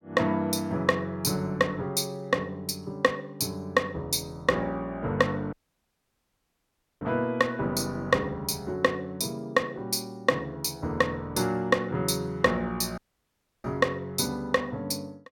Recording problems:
dropout; at 5.5 s for 1.5 s and at 13 s for 0.5 s

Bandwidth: 17 kHz